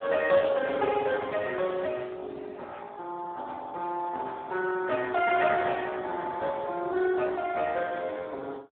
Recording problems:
telephone audio; 300 Hz to 3.1 kHz, Speex

